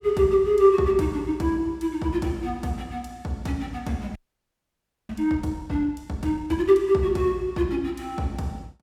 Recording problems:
audio freezing; at 4 s for 1 s

